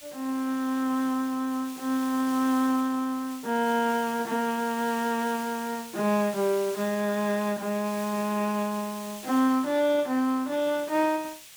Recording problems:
background hiss; slope +3 dB per octave, SNR 16 dB

